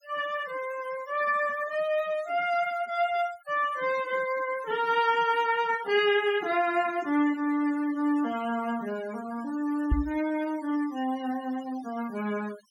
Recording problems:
denoising artefacts; signal-to-artefact ratio 18 dB
knock on the microphone; at 10 s; peak +6 dB vs average level

